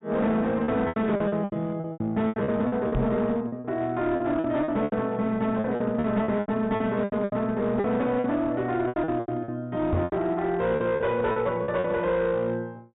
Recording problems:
treble cut off; nothing above 4 kHz
distorted audio; hard clipping, uneven, signal-to-distortion ratio 11 dB
lost packets; 15% of the sound replaced, filled with repeated pitch periods
microphone thump; at 3 s and at 10 s; peak +4 dB vs average level

